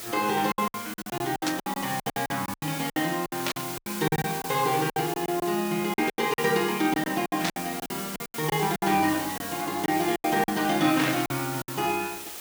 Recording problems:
background hiss; slope -1 dB per octave, SNR 8 dB
lost packets; 16% of the sound replaced, filled with silence
burst of static; 4 times, first at 1.5 s; peak +3 dB vs average level

